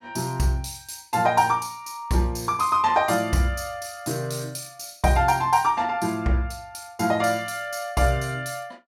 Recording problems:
none

